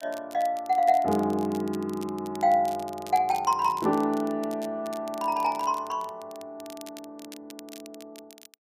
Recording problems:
crackling; vinyl, SNR 21 dB

